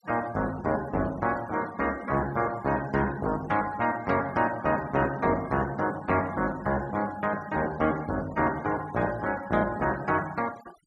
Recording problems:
noise reduction artefacts; signal-to-artefact ratio 19 dB

